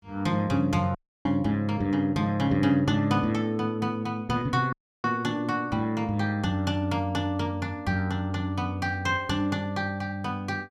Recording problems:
dropout; at 1 s and at 4.5 s

